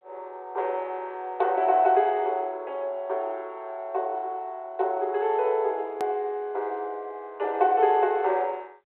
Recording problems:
phone line; 340 Hz to 3.4 kHz, G.726
edit click; at 6 s

